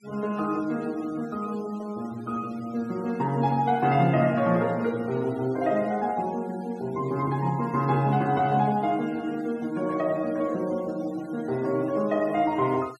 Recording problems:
noise reduction artefacts; signal-to-artefact ratio 23 dB

